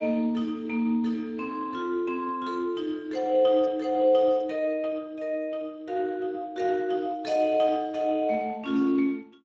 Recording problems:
lossy codec; Speex, log-spectral distance 2 dB, nothing above 7.6 kHz

